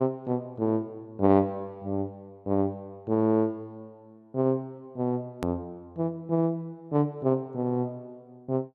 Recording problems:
hard cut with a click; at 5.5 s

